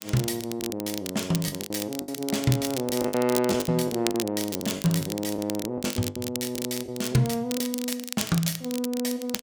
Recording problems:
crackle; vinyl, SNR 7 dB
lost packets; 10% of the sound replaced, filled with the last packet

